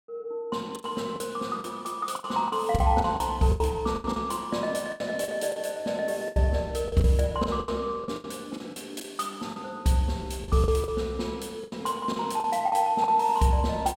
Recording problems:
lost packets; 12% of the sound replaced, filled with the last packet

